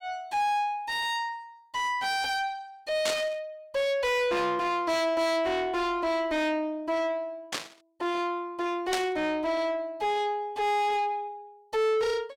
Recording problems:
distortion; soft clipping, signal-to-distortion ratio 5 dB
burst of static; at 3 s, at 7.5 s and at 9 s; peak +2 dB vs average level

